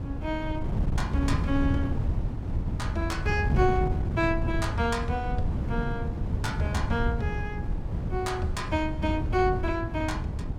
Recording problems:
wind on the microphone; below 150 Hz, SNR 0 dB

